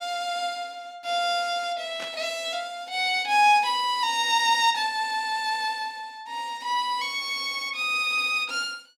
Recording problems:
burst of static; at 2 s; peak -9 dB vs average level

